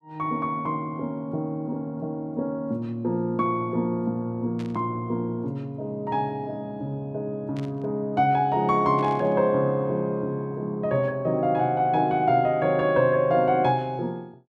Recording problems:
burst of static; at 4.5 s, at 7.5 s and at 9 s; peak -15 dB vs average level

